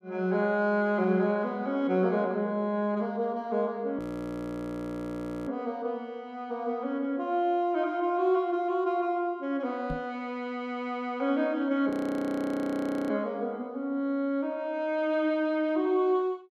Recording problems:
audio freezing; at 4 s for 1.5 s and at 12 s for 1 s
knock on the microphone; at 10 s; peak -4 dB vs average level

